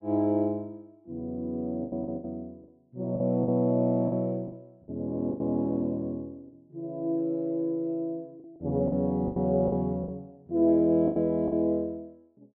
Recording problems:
packet loss; 8% of the sound replaced, filled with the last packet

